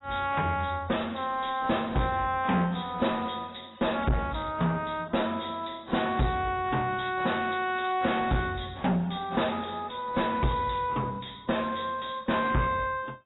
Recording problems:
lossy codec; AAC, log-spectral distance 6 dB, nothing above 3.9 kHz
distortion; soft clipping, signal-to-distortion ratio 8 dB

